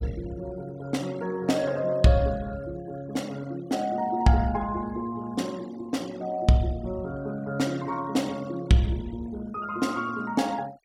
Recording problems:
denoising artefacts; signal-to-artefact ratio 23 dB

